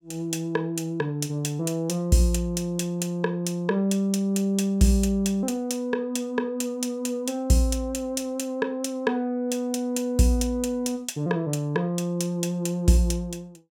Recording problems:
none

